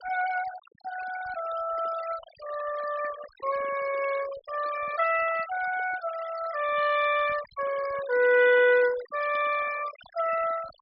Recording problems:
low-pass filter; nothing above 5.5 kHz
denoising artefacts; signal-to-artefact ratio 16 dB

